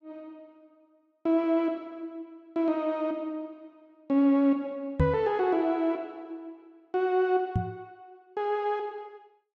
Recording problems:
microphone bump; at 5 s and at 7.5 s; peak +7 dB vs average level

